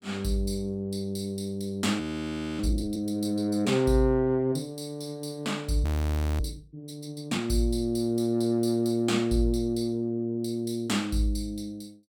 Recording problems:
frozen audio; at 2 s for 0.5 s and at 6 s for 0.5 s

